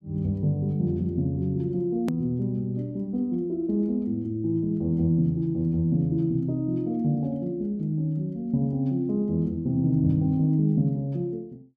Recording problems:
hard cut with a click; at 2 s

